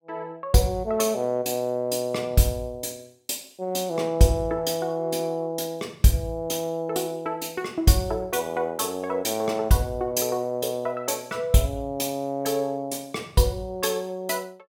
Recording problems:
none

